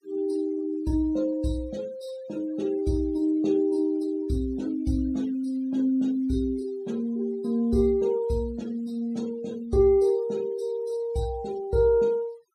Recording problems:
denoising artefacts; signal-to-artefact ratio 24 dB

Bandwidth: 15.5 kHz